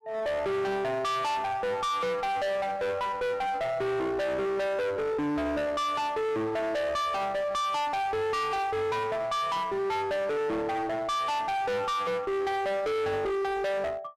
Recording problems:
distorted audio; hard clipping, uneven, signal-to-distortion ratio 5 dB

